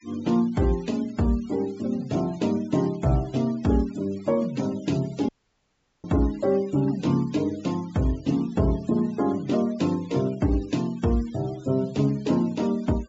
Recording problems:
treble cut off; nothing above 7.6 kHz
denoising artefacts; signal-to-artefact ratio 22 dB
audio cutting out; at 5.5 s for 1 s

